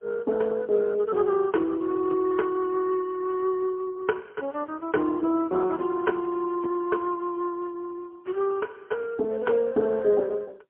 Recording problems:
phone line; 280 Hz to 2 kHz, AMR-NB, then MP3

